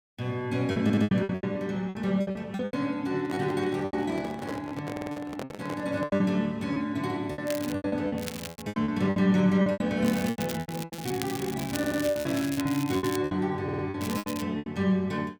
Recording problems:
packet loss; 16% of the sound replaced, filled with repeated pitch periods
audio stuttering; 4 times, first at 1 s
microphone handling noise; from 3 to 6 s; peak -4 dB vs average level
crackle; 4 times, first at 7.5 s; loose cable, SNR 11 dB

